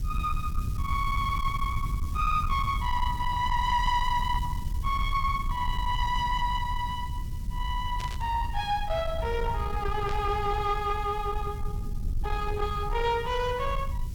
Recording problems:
distortion; soft clipping, signal-to-distortion ratio 12 dB
background hiss; slope +2 dB per octave, SNR 22 dB
rumble; below 90 Hz, SNR 5 dB
static burst; at 8 s and at 10 s; peak -8 dB vs average level

